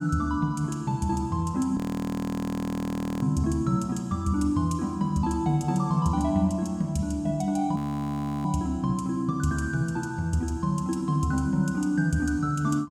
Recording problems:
frozen audio; at 2 s for 1.5 s and at 8 s for 0.5 s

